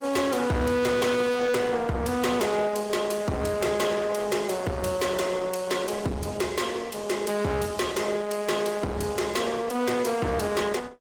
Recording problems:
codec artefacts; Opus, log-spectral distance 4 dB, nothing above 19 kHz
distorted audio; hard clipping, signal-to-distortion ratio 6 dB

